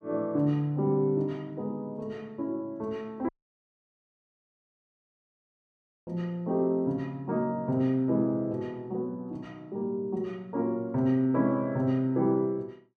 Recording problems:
dropout; at 3.5 s for 3 s

